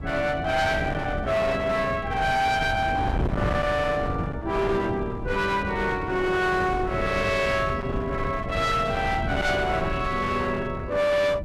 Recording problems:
distorted audio; hard clipping, uneven, signal-to-distortion ratio 7 dB
wind on the microphone; below 300 Hz, SNR 7 dB

